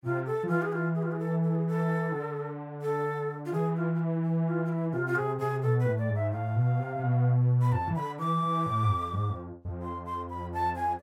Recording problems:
none

